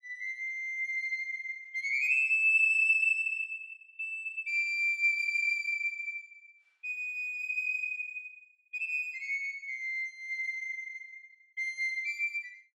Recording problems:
none

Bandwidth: 12.5 kHz